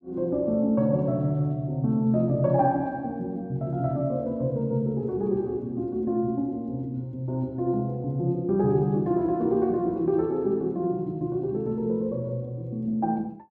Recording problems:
none

